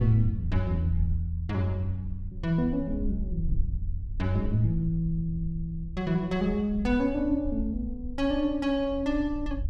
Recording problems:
wind on the microphone; below 62 Hz, SNR 9 dB

